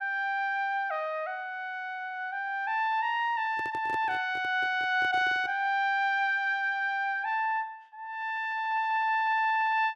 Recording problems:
handling noise; from 3.5 to 5.5 s; peak -9 dB vs average level

